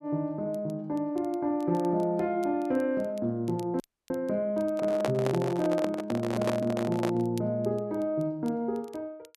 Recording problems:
crackling; vinyl, SNR 28 dB
dropout; at 4 s
microphone handling noise; from 4.5 to 7.5 s; peak +3 dB vs average level

